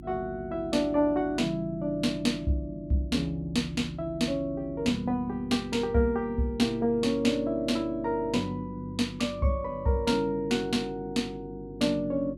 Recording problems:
hum; 50 Hz, harmonics up to 350 Hz, SNR 16 dB

